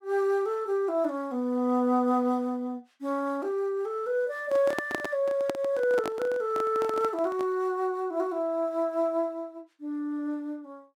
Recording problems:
handling noise; from 4.5 to 7.5 s; peak 0 dB vs average level

